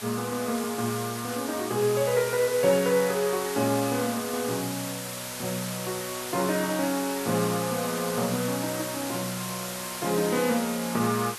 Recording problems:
background hiss; SNR 7 dB

